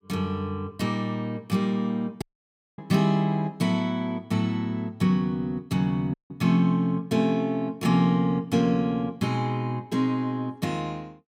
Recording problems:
audio cutting out; at 2 s for 0.5 s and at 6 s

